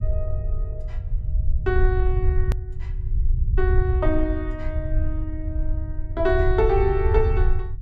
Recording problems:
low-frequency rumble; below 72 Hz, SNR -1 dB
edit click; at 2.5 s

